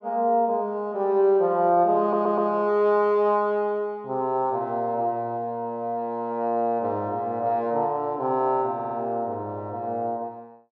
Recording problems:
audio stuttering; at 2 s and at 8.5 s

